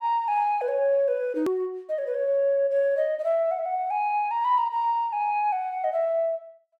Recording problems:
edit click; at 1.5 s

